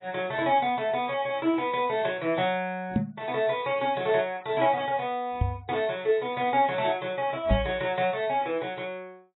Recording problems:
lossy compression; AAC, log-spectral distance 3 dB, nothing above 3.8 kHz
knock on the microphone; at 3 s, at 5.5 s and at 7.5 s; peak +6 dB vs average level

